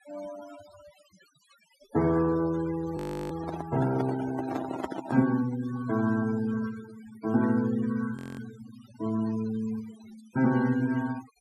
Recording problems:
noise reduction artefacts; signal-to-artefact ratio 15 dB
frozen audio; at 3 s and at 8 s
handling noise; from 3.5 to 5 s; peak 0 dB vs average level

